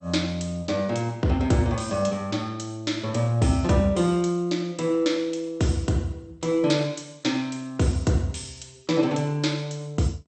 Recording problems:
codec artefacts; MP2, log-spectral distance 3 dB, nothing above 8.5 kHz

